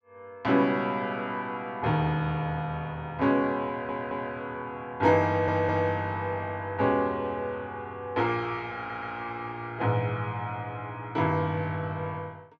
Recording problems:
stutter; at 3.5 s, at 5.5 s and at 9 s

